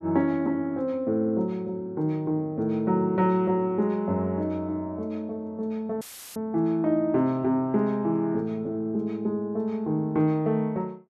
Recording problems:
dropout; at 6 s; filled with static

